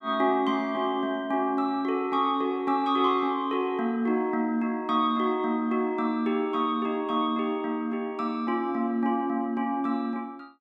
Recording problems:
none

